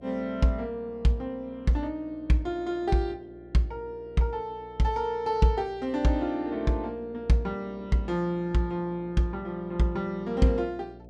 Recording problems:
electrical hum; 60 Hz, harmonics up to 720 Hz, SNR 22 dB

